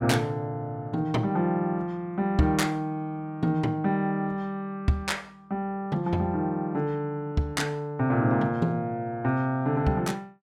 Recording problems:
none

